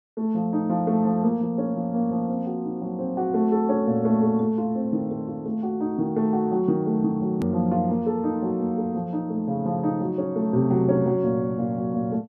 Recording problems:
hard cut with a click; at 7.5 s

